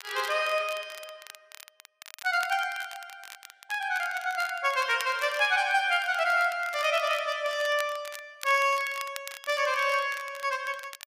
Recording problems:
crackling; vinyl, SNR 17 dB

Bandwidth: 15 kHz